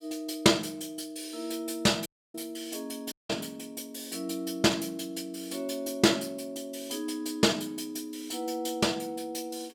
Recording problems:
dropout; at 2 s and at 3 s

